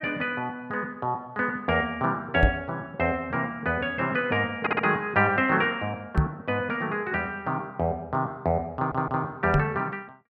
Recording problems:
knock on the microphone; at 2.5 s, at 6 s and at 9.5 s; peak +8 dB vs average level
audio stuttering; at 4.5 s and at 9 s

